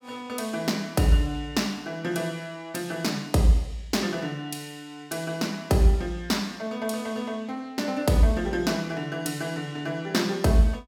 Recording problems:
none

